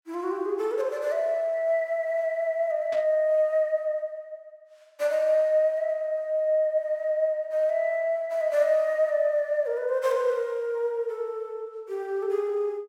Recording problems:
burst of static; at 3 s; peak -12 dB vs average level

